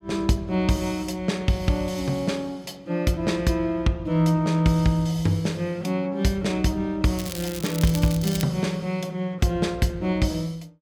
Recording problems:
crackling; from 7 to 8.5 s; loose cable, SNR 11 dB

